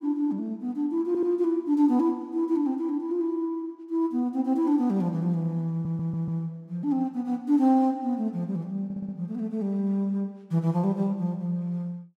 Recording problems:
stutter; at 1 s, at 5.5 s and at 9 s

